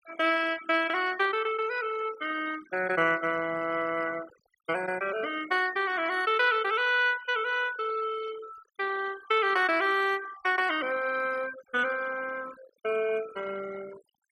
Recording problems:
noise reduction artefacts; signal-to-artefact ratio 17 dB

